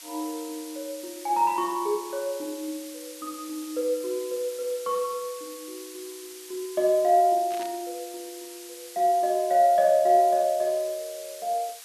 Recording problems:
hiss; SNR 16 dB
burst of static; at 7.5 s; peak -11 dB vs average level

